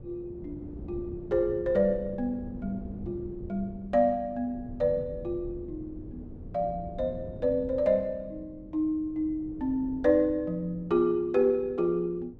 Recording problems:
wind on the microphone; below 230 Hz, SNR 15 dB

